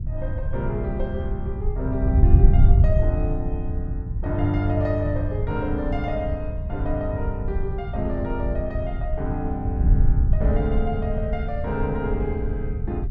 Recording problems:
wind noise; below 88 Hz, SNR -3 dB

